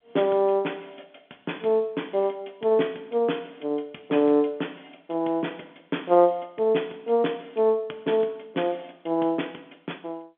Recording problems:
phone line; 240 Hz to 3.5 kHz, G.711

